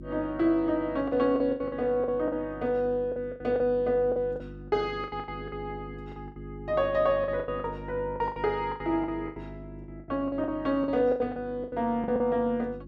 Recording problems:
electrical hum; 50 Hz, harmonics up to 350 Hz, SNR 15 dB
lost packets; 15% of the sound replaced, filled with the last packet

